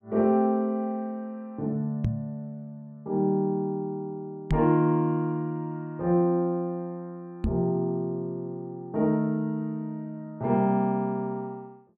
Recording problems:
microphone bump; at 2 s, at 4.5 s and at 7.5 s; peak +5 dB vs average level

